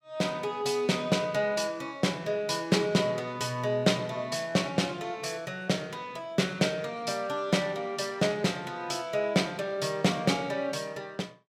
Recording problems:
none

